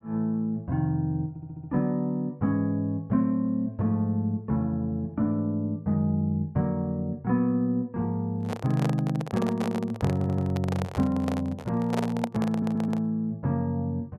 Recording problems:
stutter; at 1.5 s, at 10 s and at 12 s
microphone handling noise; from 8.5 to 13 s; peak +1 dB vs average level

